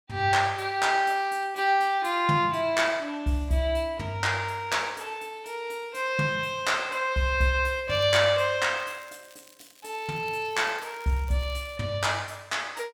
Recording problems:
crackle; at 8 s and from 9 to 12 s; loose cable, SNR 27 dB

